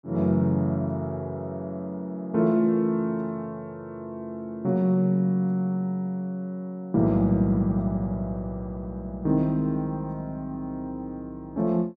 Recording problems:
none

